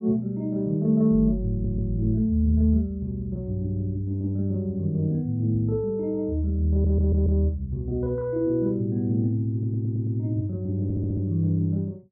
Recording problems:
stutter; 4 times, first at 1.5 s

